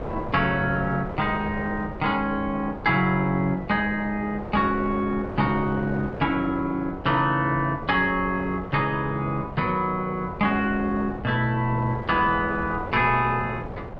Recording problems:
wind noise; below 640 Hz, SNR 11 dB

